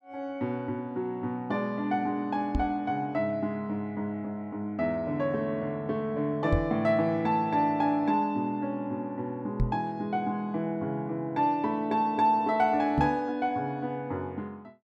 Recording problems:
knock on the microphone; 4 times, first at 2.5 s; peak +5 dB vs average level

